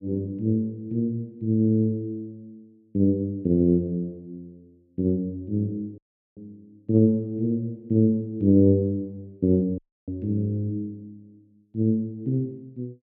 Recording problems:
dropout; at 6 s and at 10 s

